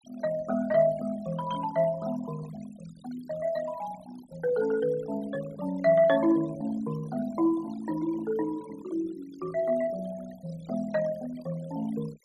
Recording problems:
noise reduction artefacts; signal-to-artefact ratio 19 dB

